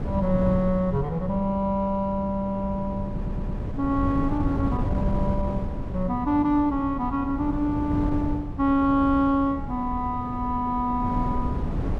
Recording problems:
wind noise; below 190 Hz, SNR 6 dB
stutter; at 3 s

